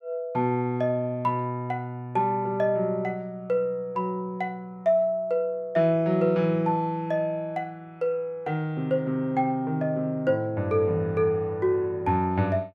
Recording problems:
none

